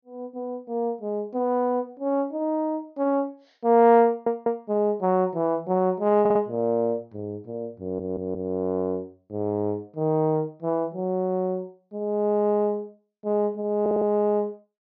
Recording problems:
treble cut off; nothing above 6.5 kHz
stutter; 4 times, first at 4 s

